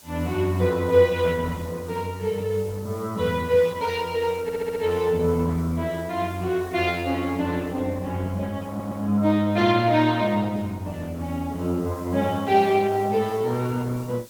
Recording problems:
lossy codec; Opus, log-spectral distance 2 dB
background hiss; SNR 24 dB
stutter; at 4.5 s and at 8.5 s

